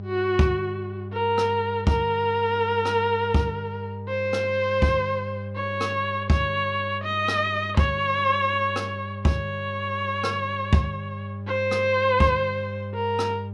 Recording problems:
hum; 50 Hz, harmonics up to 800 Hz, SNR 11 dB

